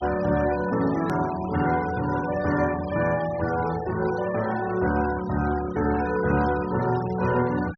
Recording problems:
treble missing; nothing above 6.2 kHz
noise reduction artefacts; signal-to-artefact ratio 15 dB
click at an edit; at 1 s

